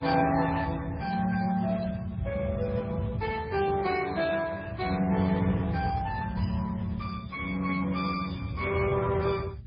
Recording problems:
codec artefacts; Speex, then MP3, log-spectral distance 3 dB, nothing above 4.9 kHz
low-frequency rumble; below 130 Hz, SNR 8 dB
static burst; at 6 s; peak -17 dB vs average level

